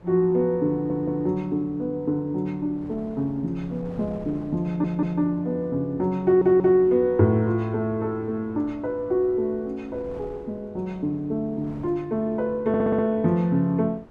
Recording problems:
wind on the microphone; below 530 Hz, SNR 23 dB
audio stuttering; 4 times, first at 0.5 s

